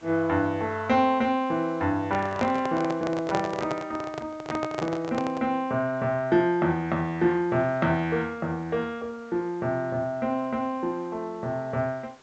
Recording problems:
treble cut off; nothing above 8 kHz
hiss; SNR 27 dB
handling noise; from 2 to 5.5 s; peak +2 dB vs average level

